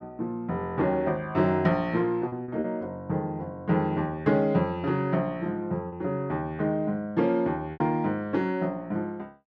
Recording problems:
lost packets; 3% of the sound replaced, filled with repeated pitch periods

